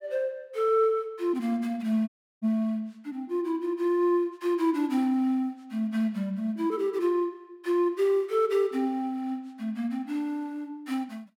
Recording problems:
dropout; at 2 s

